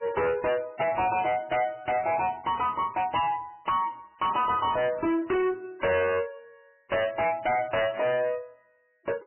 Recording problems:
lossy compression; MP3, log-spectral distance 4 dB, nothing above 3 kHz
distortion; hard clipping, signal-to-distortion ratio 6 dB

